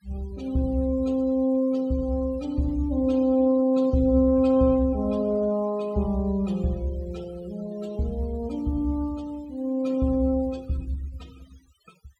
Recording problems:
denoising artefacts; signal-to-artefact ratio 26 dB

